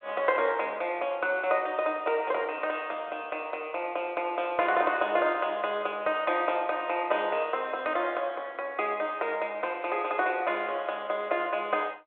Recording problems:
telephone audio; 280 Hz to 3.5 kHz, G.726

